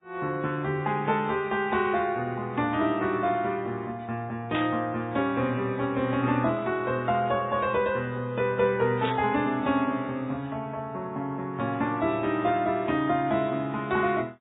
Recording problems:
treble cut off; nothing above 3.5 kHz
codec artefacts; MP3, log-spectral distance 2 dB
burst of static; at 4.5 s and at 9 s; peak -3 dB vs average level

